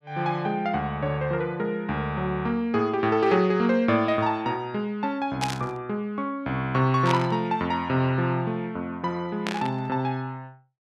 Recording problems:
burst of static; at 5.5 s, at 7 s and at 9.5 s; peak +1 dB vs average level

